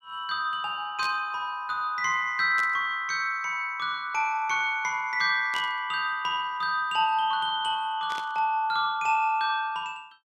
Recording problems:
burst of static; 4 times, first at 1 s; peak -9 dB vs average level

